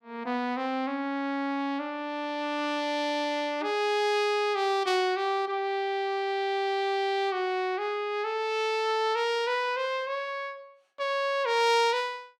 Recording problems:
none

